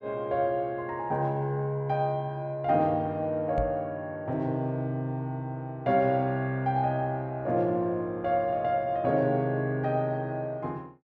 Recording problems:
microphone bump; at 3.5 s; peak -1 dB vs average level

